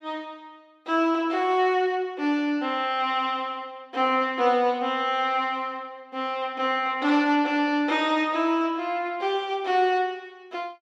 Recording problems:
none

